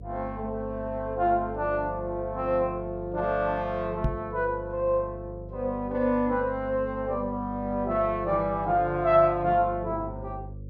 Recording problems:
electrical hum; 50 Hz, harmonics up to 550 Hz, SNR 14 dB
microphone thump; at 4 s; peak +4 dB vs average level

